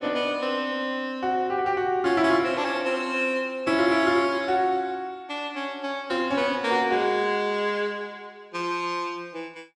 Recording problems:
none

